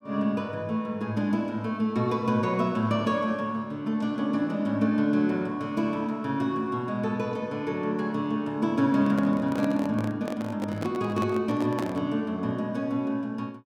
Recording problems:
microphone handling noise; from 9 to 12 s; peak -1 dB vs average level

